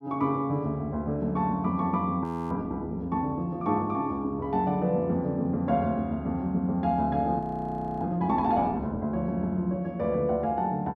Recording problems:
frozen audio; at 2 s and at 7.5 s for 0.5 s

